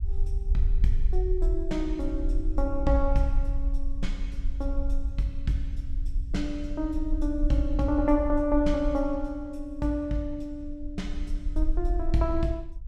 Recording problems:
low-frequency rumble; below 48 Hz, SNR 2 dB

